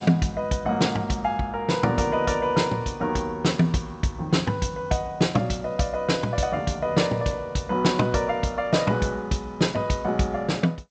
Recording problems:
lossy compression; G.722, log-spectral distance 2 dB, nothing above 7.6 kHz

